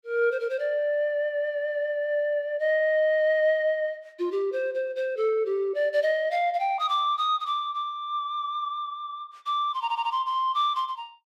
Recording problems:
stutter; at 10 s

